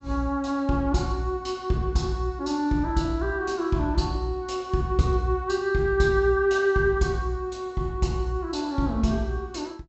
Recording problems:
treble cut off; nothing above 7.9 kHz

